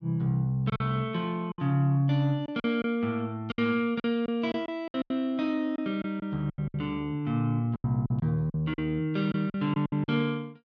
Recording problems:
packet loss; 10% of the sound replaced, filled with silence

